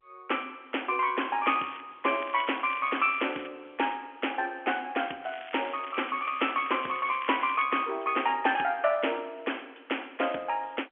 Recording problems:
telephone audio; 320 Hz to 3.3 kHz, G.711
crackle; at 1.5 s, from 2 to 3.5 s and from 5 to 7.5 s; loose cable, SNR 15 dB

